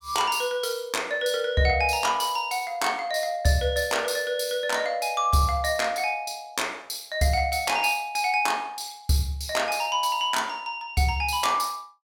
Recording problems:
none

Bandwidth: 17 kHz